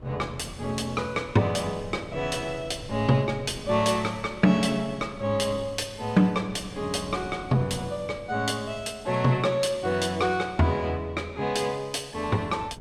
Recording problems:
wind on the microphone; below 340 Hz, SNR 19 dB

